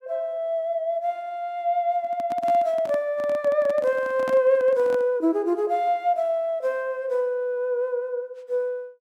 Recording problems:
microphone handling noise; from 2 to 5 s; peak -6 dB vs average level

